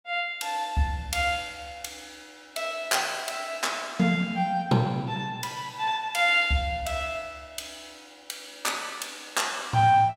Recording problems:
none

